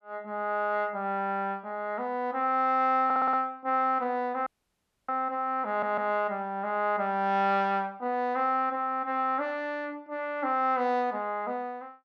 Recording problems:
stutter; at 3 s and at 5.5 s
audio cutting out; at 4.5 s for 0.5 s

